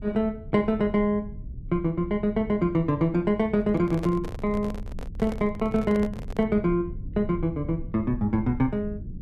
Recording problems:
rumble; below 110 Hz, SNR 13 dB
microphone handling noise; from 3.5 to 6.5 s; peak -4 dB vs average level

